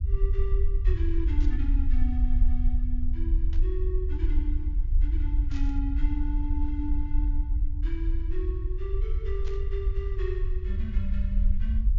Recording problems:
low-pass filter; nothing above 7.2 kHz
low-frequency rumble; below 56 Hz, SNR -10 dB
static burst; 4 times, first at 1.5 s; peak -6 dB vs average level

